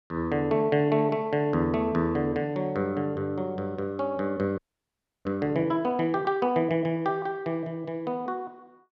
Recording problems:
frozen audio; at 4.5 s for 0.5 s

